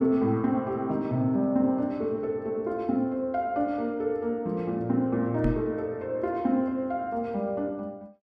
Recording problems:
microphone thump; at 5.5 s; peak +5 dB vs average level

